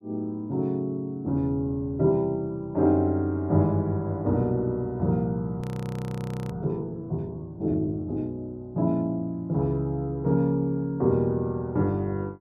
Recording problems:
frozen audio; at 5.5 s for 1 s

